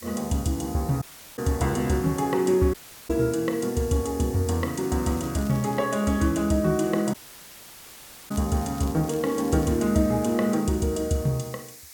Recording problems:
background hiss; SNR 18 dB
audio cutting out; at 1 s, at 2.5 s and at 7 s for 1 s
crackle; at 5 s and from 8.5 to 10 s; loose cable, SNR 24 dB

